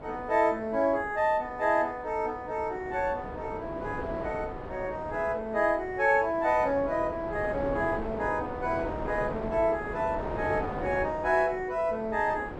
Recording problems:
wind noise; below 710 Hz, SNR 10 dB

